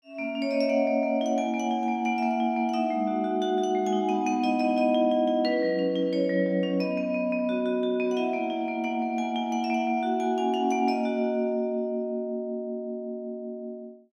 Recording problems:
none

